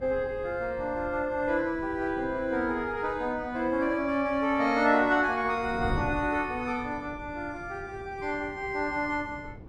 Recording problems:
wind noise; below 270 Hz, SNR 15 dB

